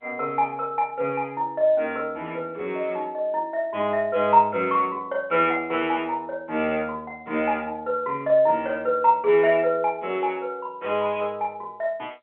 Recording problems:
phone line; 190 Hz to 3.4 kHz, G.711

